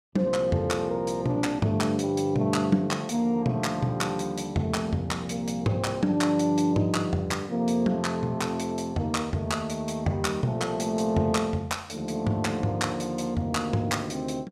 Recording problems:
none

